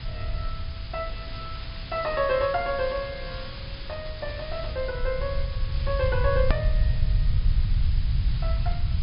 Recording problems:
treble cut off; nothing above 5.1 kHz
hiss; SNR 12 dB
rumble; below 80 Hz, SNR 0 dB
edit click; at 6.5 s

